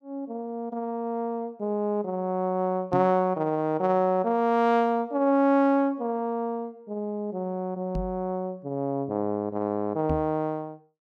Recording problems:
microphone bump; at 3 s, at 8 s and at 10 s; peak 0 dB vs average level

